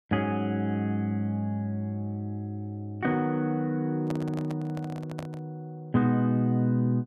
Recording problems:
handling noise; from 4 to 5.5 s; peak -5 dB vs average level

